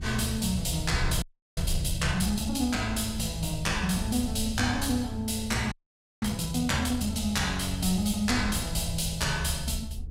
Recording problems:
low-frequency rumble; below 76 Hz, SNR 9 dB
audio freezing; at 1 s and at 5.5 s for 0.5 s

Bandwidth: 16 kHz